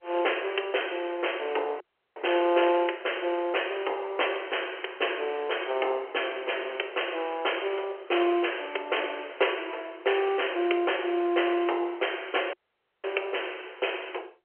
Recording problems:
phone line; 300 Hz to 3.2 kHz, G.711
dropout; at 2 s and at 13 s for 0.5 s

